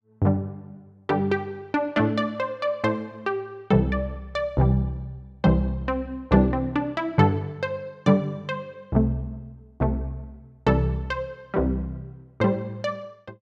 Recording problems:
none

